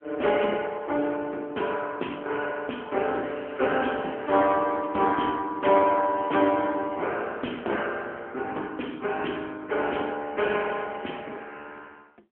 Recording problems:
telephone audio; 260 Hz to 3.3 kHz, AMR-NB

